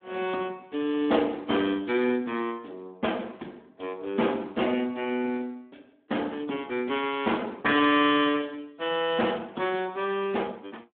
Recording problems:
phone line; 190 Hz to 3.5 kHz, Speex

